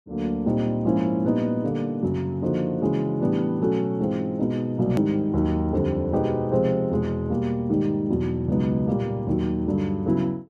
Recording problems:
hard cut with a click; at 5 s

